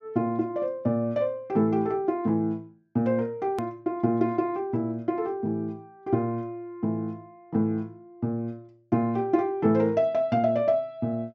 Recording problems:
low-pass filter; nothing above 8 kHz
click at an edit; at 3.5 s

